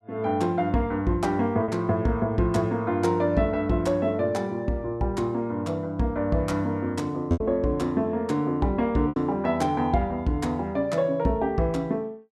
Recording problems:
lost packets; 1.7% of the sound replaced, filled with repeated pitch periods

